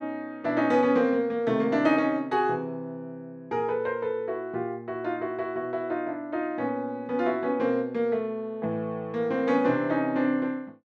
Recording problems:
none

